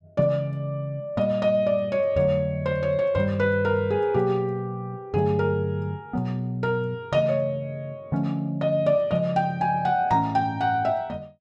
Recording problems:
none

